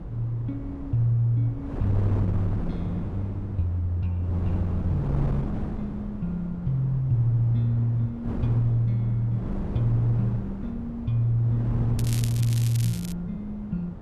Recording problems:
wind noise; below 230 Hz, SNR 8 dB
crackle; from 12 to 13 s; loose cable, SNR 12 dB

